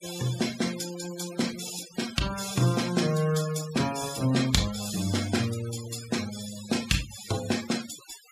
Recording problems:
noise reduction artefacts; signal-to-artefact ratio 11 dB

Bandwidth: 15 kHz